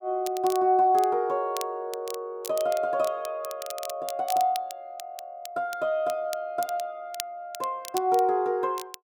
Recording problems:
crackle; vinyl, SNR 15 dB

